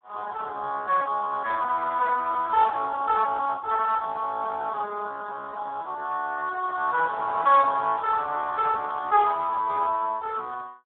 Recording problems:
phone line; 320 Hz to 3.3 kHz, Speex

